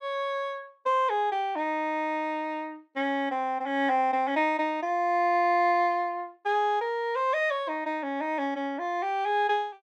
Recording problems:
none

